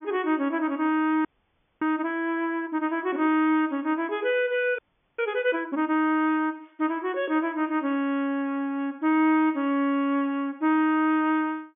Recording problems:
low-pass filter; nothing above 3.5 kHz
audio freezing; at 1.5 s for 0.5 s and at 5 s

